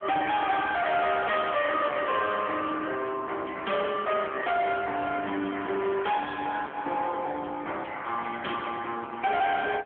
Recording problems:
phone line; 240 Hz to 3.3 kHz, AMR-NB
distorted audio; soft clipping, signal-to-distortion ratio 7 dB

